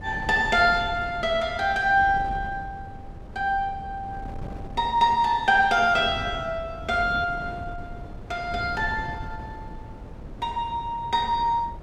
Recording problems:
wind noise; below 250 Hz, SNR 15 dB

